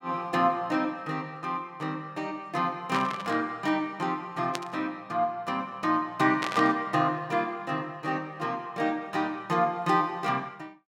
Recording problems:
static burst; at 3 s, at 4.5 s and at 6.5 s; peak +1 dB vs average level

